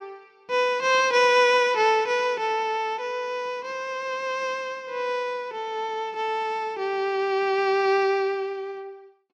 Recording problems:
none

